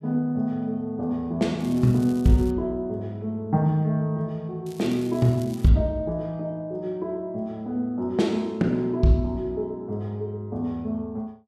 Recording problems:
crackle; at 1.5 s and from 4.5 to 5.5 s; loose cable, SNR 23 dB

